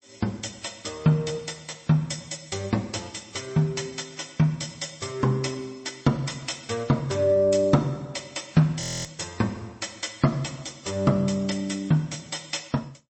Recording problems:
lossy codec; MP3, log-spectral distance 7 dB, nothing above 8.2 kHz
audio freezing; at 9 s

